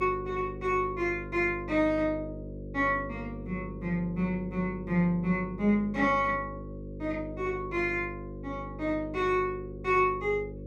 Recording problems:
hum; 50 Hz, harmonics up to 550 Hz, SNR 11 dB

